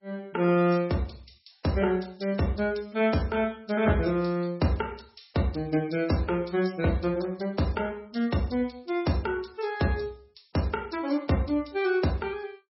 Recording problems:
codec artefacts; MP3, log-spectral distance 5 dB, nothing above 5.5 kHz

